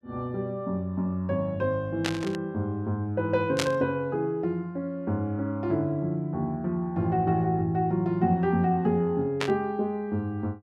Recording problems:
static burst; at 2 s, at 3.5 s and at 9.5 s; peak +4 dB vs average level

